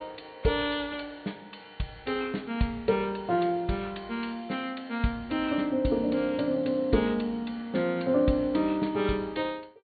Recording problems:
low-pass filter; nothing above 4.4 kHz

